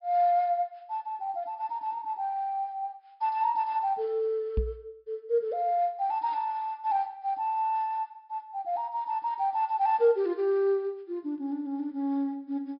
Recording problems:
treble cut off; nothing above 5.5 kHz
microphone thump; at 4.5 s; peak +4 dB vs average level

